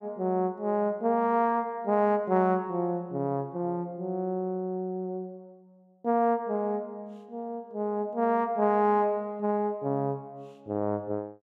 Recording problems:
none

